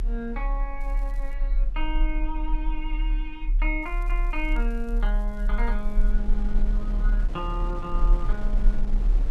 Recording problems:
low-frequency rumble; below 38 Hz, strongest tone 36 Hz, SNR -6 dB
wind on the microphone; below 250 Hz, SNR 7 dB
crackle; at 1 s and from 4 to 6 s; loose cable, SNR 26 dB

